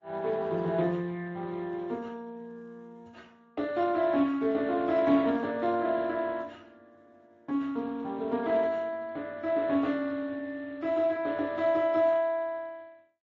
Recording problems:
lossy compression; Speex, then AAC, log-spectral distance 3 dB

